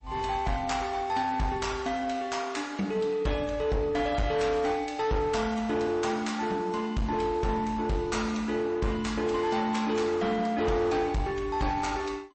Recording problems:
lossy codec; MP3, log-spectral distance 2 dB, nothing above 8.2 kHz
distortion; hard clipping, uneven, signal-to-distortion ratio 10 dB

